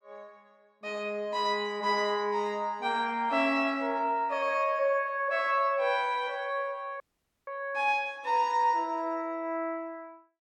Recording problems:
dropout; at 7 s

